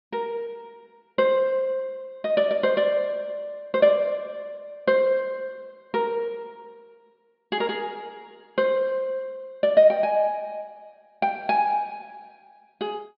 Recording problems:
treble cut off; nothing above 5 kHz

